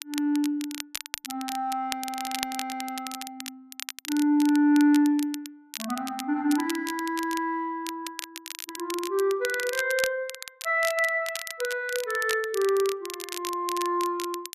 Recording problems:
crackle; vinyl, SNR 10 dB

